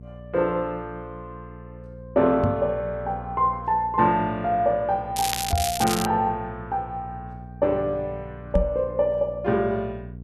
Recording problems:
electrical hum; 60 Hz, harmonics up to 480 Hz, SNR 15 dB
microphone thump; at 2.5 s, at 5.5 s and at 8.5 s; peak +5 dB vs average level
crackle; at 5 s; loose cable, SNR 5 dB

